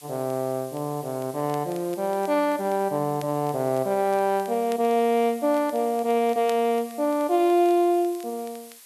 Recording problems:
hiss; slope +3 dB per octave, SNR 21 dB
crackling; vinyl, SNR 28 dB

